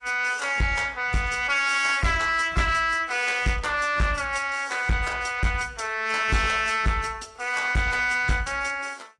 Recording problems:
lossy compression; AAC, log-spectral distance 4 dB, nothing above 10.4 kHz
distortion; soft clipping, signal-to-distortion ratio 10 dB

